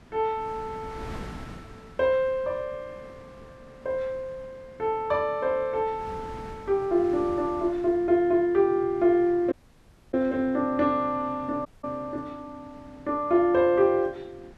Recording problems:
wind noise; below 750 Hz, SNR 21 dB
audio cutting out; at 9.5 s for 0.5 s and at 12 s

